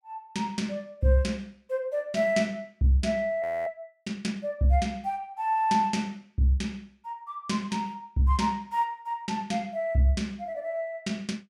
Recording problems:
frozen audio; at 3.5 s

